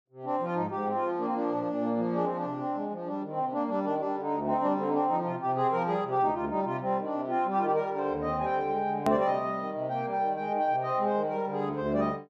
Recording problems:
edit click; at 9 s

